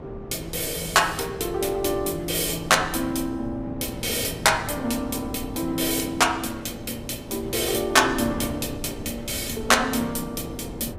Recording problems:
wind noise; below 420 Hz, SNR 13 dB

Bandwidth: 15.5 kHz